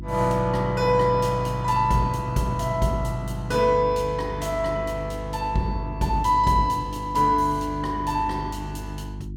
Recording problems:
hum; 50 Hz, harmonics up to 350 Hz, SNR 12 dB

